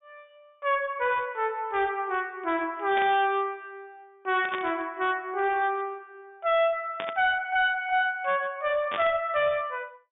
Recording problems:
treble missing; nothing above 3.6 kHz
distortion; hard clipping, uneven, signal-to-distortion ratio 10 dB
burst of static; 4 times, first at 3 s; peak -3 dB vs average level

